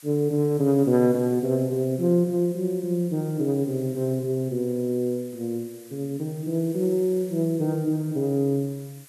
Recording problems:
hiss; SNR 23 dB

